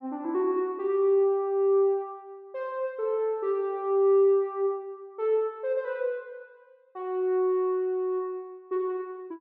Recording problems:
none

